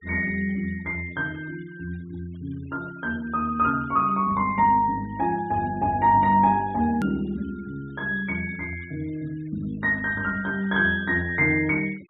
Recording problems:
treble missing; nothing above 4 kHz
denoising artefacts; signal-to-artefact ratio 27 dB
click at an edit; at 7 s

